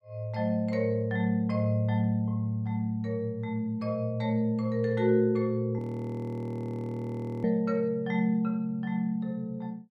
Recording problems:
audio freezing; at 6 s for 1.5 s

